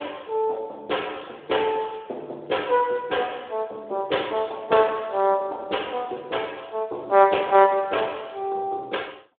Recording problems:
phone line; 340 Hz to 3.4 kHz, Speex

